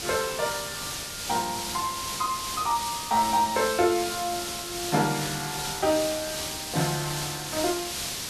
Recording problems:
hiss; slope 0 dB per octave, SNR 3 dB

